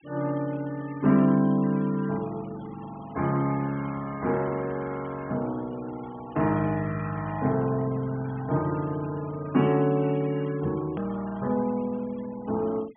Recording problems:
treble missing; nothing above 3.4 kHz
noise reduction artefacts; signal-to-artefact ratio 22 dB
hard cut with a click; at 11 s

